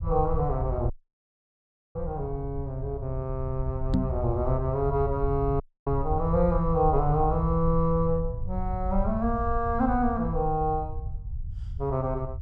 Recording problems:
rumble; below 82 Hz, SNR 6 dB
dropout; at 1 s for 1 s and at 5.5 s
knock on the microphone; at 4 s; peak +7 dB vs average level

